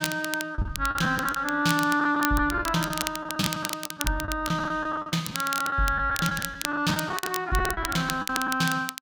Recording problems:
crackle; vinyl, SNR 8 dB
lost packets; 14% of the sound replaced, filled with the last packet

